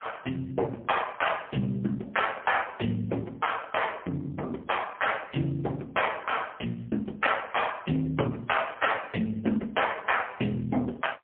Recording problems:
phone line; 220 Hz to 3.3 kHz, AMR-NB, then MP3

